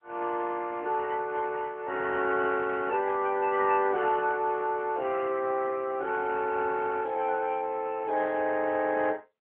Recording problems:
telephone audio; 280 Hz to 3.3 kHz, AMR-NB

